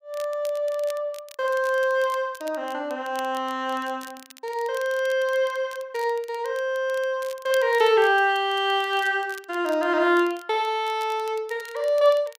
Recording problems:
crackling; vinyl, SNR 22 dB

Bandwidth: 15.5 kHz